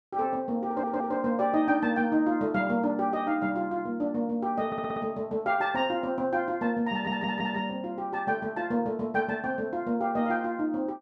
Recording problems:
stutter; at 0.5 s, at 4.5 s and at 7 s

